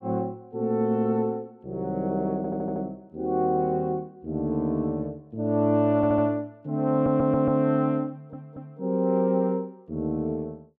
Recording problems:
stutter; 4 times, first at 2.5 s

